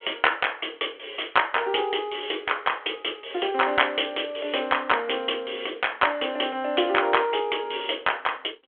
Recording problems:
phone line; 280 Hz to 3.4 kHz, G.726

